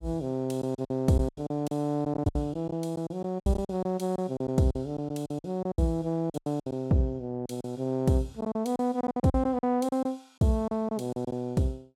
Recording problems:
lost packets; 14% of the sound replaced, filled with silence

